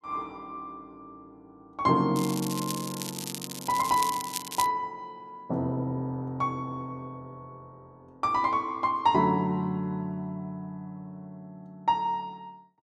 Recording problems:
crackle; from 2 to 4.5 s; loose cable, SNR 7 dB

